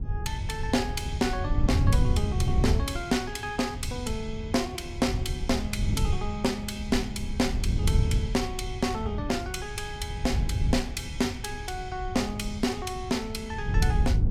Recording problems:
wind on the microphone; below 110 Hz, SNR 0 dB

